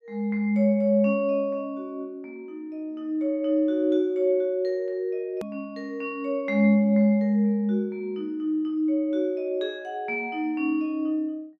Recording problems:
edit click; at 5.5 s

